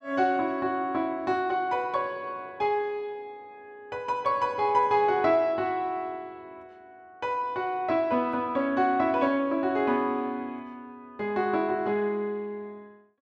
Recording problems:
none

